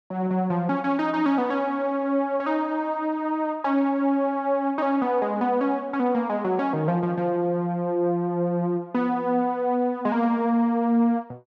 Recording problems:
none

